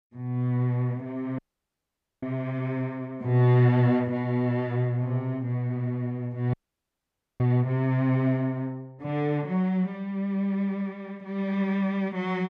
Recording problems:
audio cutting out; at 1.5 s for 1 s and at 6.5 s for 1 s

